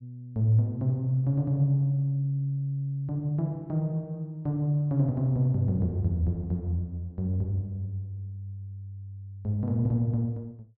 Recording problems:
low-pass filter; nothing above 5.5 kHz

